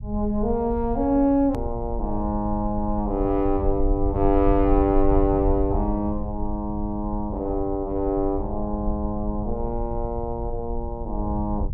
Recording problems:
rumble; below 64 Hz, SNR 7 dB
hard cut with a click; at 1.5 s

